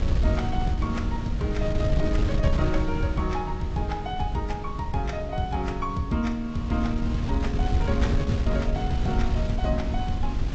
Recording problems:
low-pass filter; nothing above 8 kHz
codec artefacts; AAC, log-spectral distance 2 dB
wind noise; below 100 Hz, SNR 0 dB

